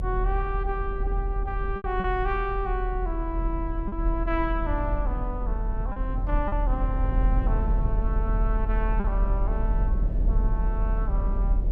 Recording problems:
low-frequency rumble; below 46 Hz, strongest tone 40 Hz, SNR -4 dB
packet loss; 2% of the sound replaced, filled with repeated pitch periods

